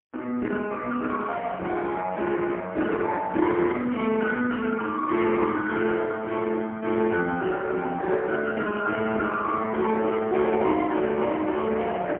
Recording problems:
phone line; 190 Hz to 3.4 kHz, AMR-NB, then MP3

